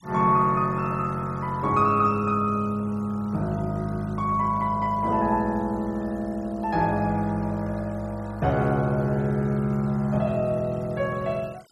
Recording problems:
noise reduction artefacts; signal-to-artefact ratio 28 dB

